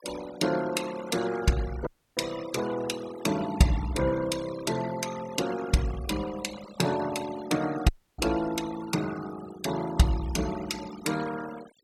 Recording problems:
noise reduction artefacts; signal-to-artefact ratio 12 dB
dropout; at 2 s and at 8 s

